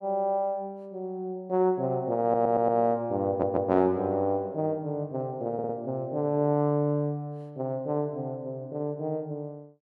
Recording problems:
audio stuttering; at 2 s, at 3.5 s and at 5.5 s

